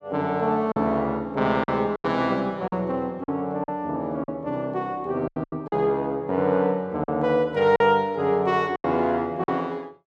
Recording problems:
lost packets; 7% of the sound replaced, filled with silence

